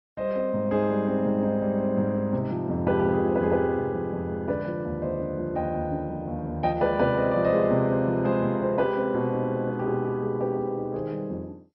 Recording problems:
lossy compression; MP2, log-spectral distance 2 dB, nothing above 5.5 kHz

